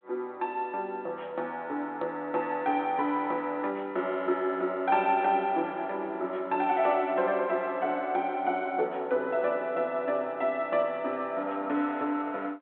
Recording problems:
phone line; 220 Hz to 3.6 kHz, G.726

